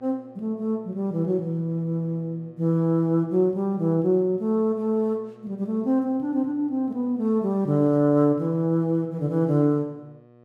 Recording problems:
electrical hum; 60 Hz, harmonics up to 1.9 kHz, SNR 28 dB

